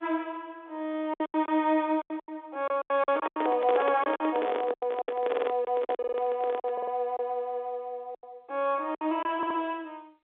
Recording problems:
telephone audio; 280 Hz to 3.6 kHz, G.711
packet loss; 11% of the sound replaced, filled with silence
handling noise; from 3 to 7 s; peak +2 dB vs average level
stutter; 4 times, first at 5.5 s

